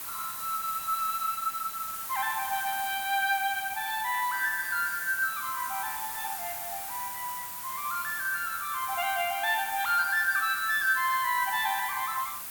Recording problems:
hiss; SNR 6 dB

